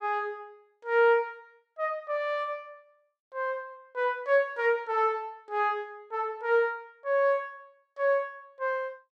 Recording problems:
none

